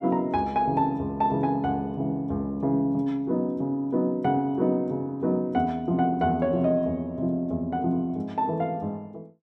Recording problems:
none

